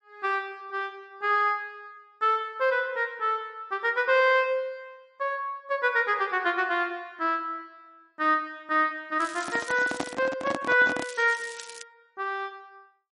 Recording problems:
codec artefacts; MP3, log-spectral distance 3 dB
crackling; at 9 s and at 11 s; loose cable, SNR 16 dB
handling noise; from 9.5 to 11 s; peak 0 dB vs average level

